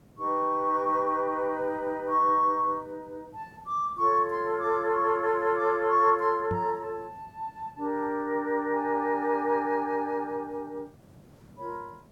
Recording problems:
hiss; SNR 28 dB
microphone bump; at 6.5 s; peak -3 dB vs average level

